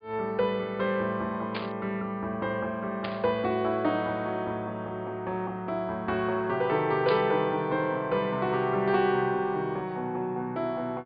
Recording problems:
low-pass filter; nothing above 4.8 kHz
burst of static; at 1.5 s, at 3 s and at 7 s; peak -2 dB vs average level

